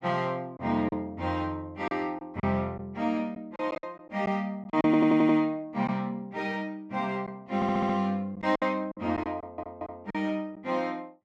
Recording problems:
lost packets; 6% of the sound replaced, filled with silence
audio stuttering; at 5 s, at 7.5 s and at 9.5 s

